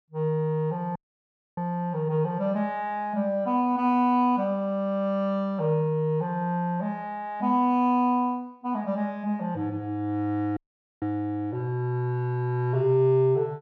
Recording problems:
dropout; at 1 s for 0.5 s and at 11 s

